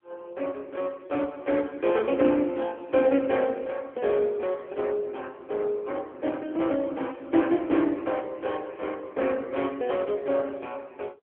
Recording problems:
phone line; 240 Hz to 3.5 kHz, AMR-NB

